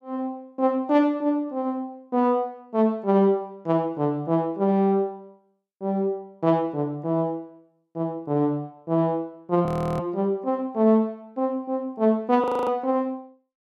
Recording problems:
frozen audio; at 9.5 s and at 12 s

